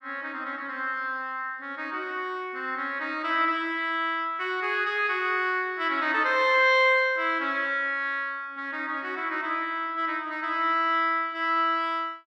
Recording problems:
none

